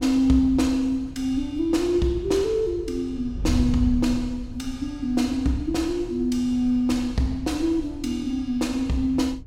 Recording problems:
wind noise; below 100 Hz, SNR 12 dB

